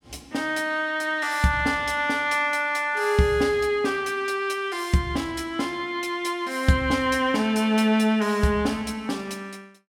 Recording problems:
none

